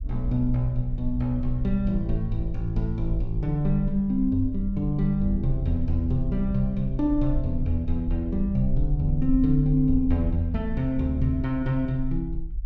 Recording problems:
rumble; below 46 Hz, strongest tone 20 Hz, SNR 8 dB

